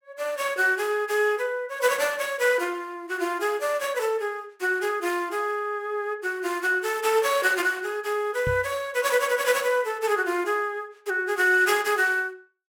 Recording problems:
microphone thump; at 8.5 s; peak -3 dB vs average level

